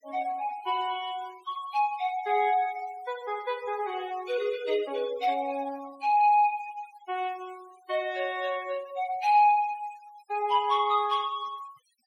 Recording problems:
denoising artefacts; signal-to-artefact ratio 20 dB

